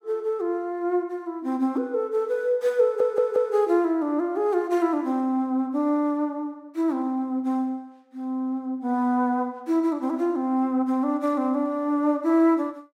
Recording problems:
stutter; at 3 s

